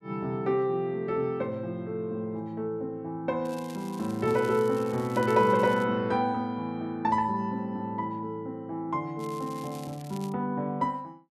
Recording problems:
crackling; from 3.5 to 6 s and from 9 to 10 s; loose cable, SNR 21 dB

